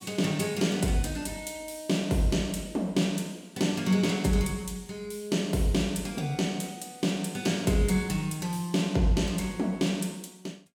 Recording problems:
none

